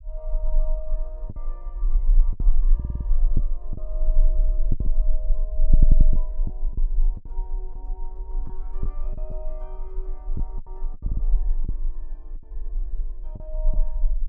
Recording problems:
low-frequency rumble; below 32 Hz, strongest tone 22 Hz, SNR -19 dB
lost packets; 7% of the sound replaced, filled with the last packet
stutter; at 3 s, at 5.5 s and at 11 s

